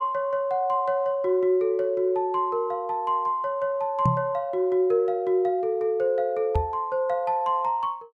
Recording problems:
knock on the microphone; at 4 s and at 6.5 s; peak +4 dB vs average level

